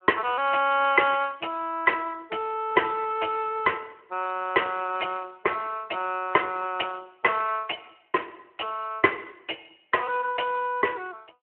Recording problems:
telephone audio; 280 Hz to 3.1 kHz, Speex

